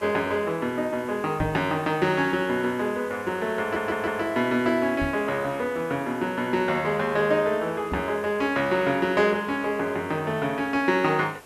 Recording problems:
background hiss; SNR 22 dB
microphone thump; at 1.5 s, at 5 s and at 8 s; peak -2 dB vs average level
audio stuttering; at 3.5 s

